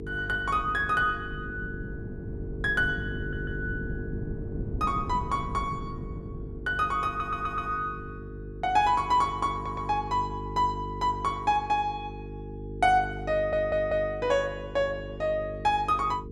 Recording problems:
hum; 50 Hz, harmonics up to 450 Hz, SNR 11 dB
wind on the microphone; below 210 Hz, SNR 12 dB
audio stuttering; 4 times, first at 3 s

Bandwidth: 13 kHz